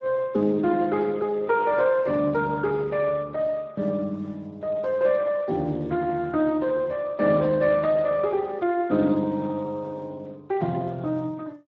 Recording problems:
lossy compression; Speex, log-spectral distance 2 dB

